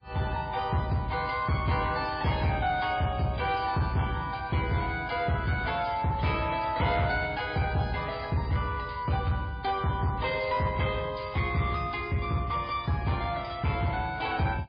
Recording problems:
lossy codec; MP3, log-spectral distance 4 dB, nothing above 4.4 kHz
distortion; soft clipping, signal-to-distortion ratio 11 dB

